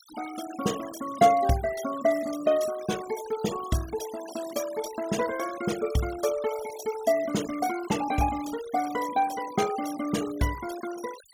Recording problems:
noise reduction artefacts; signal-to-artefact ratio 13 dB

